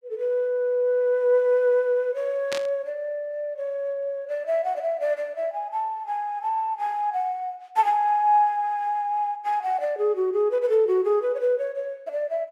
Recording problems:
burst of static; at 2.5 s; peak -3 dB vs average level

